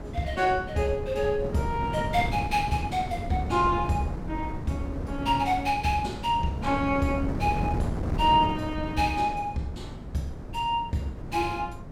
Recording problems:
wind noise; below 280 Hz, SNR 7 dB

